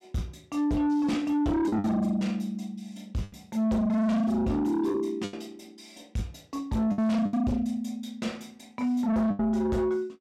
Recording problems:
distorted audio; soft clipping, signal-to-distortion ratio 8 dB
packet loss; 6% of the sound replaced, filled with the last packet

